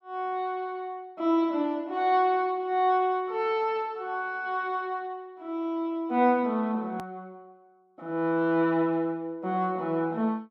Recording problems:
click at an edit; at 7 s

